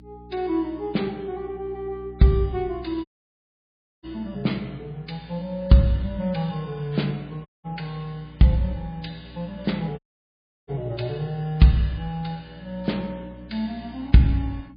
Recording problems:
lossy codec; MP3, log-spectral distance 2 dB, nothing above 4.6 kHz
mains hum; 60 Hz, harmonics up to 300 Hz, SNR 20 dB
dropout; at 3 s for 1 s, at 7.5 s and at 10 s for 0.5 s

